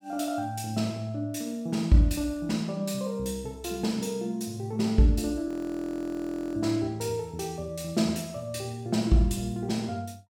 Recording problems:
frozen audio; at 5.5 s for 1 s

